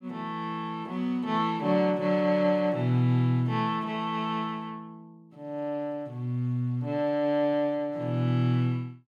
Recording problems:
none

